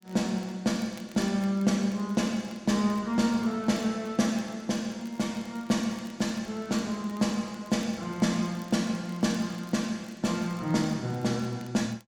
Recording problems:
crackling; vinyl, SNR 28 dB

